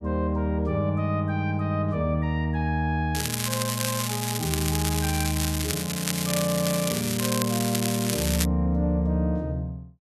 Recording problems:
crackle; from 3 to 8.5 s; loose cable, SNR 3 dB

